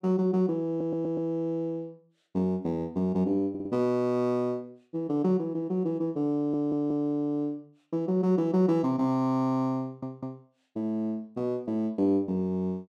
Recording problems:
audio stuttering; 4 times, first at 0.5 s

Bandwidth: 13 kHz